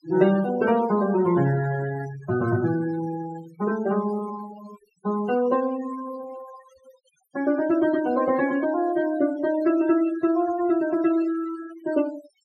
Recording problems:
noise reduction artefacts; signal-to-artefact ratio 15 dB

